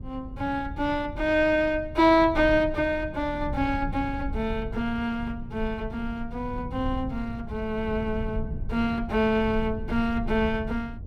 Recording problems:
low-frequency rumble; below 120 Hz, SNR 10 dB

